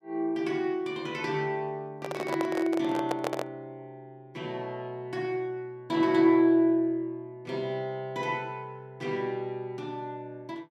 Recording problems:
microphone handling noise; from 2 to 3.5 s; peak +2 dB vs average level

